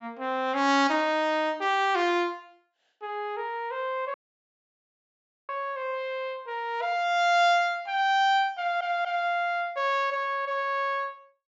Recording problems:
treble cut off; nothing above 8 kHz
audio cutting out; at 4 s for 1.5 s
stutter; at 8.5 s

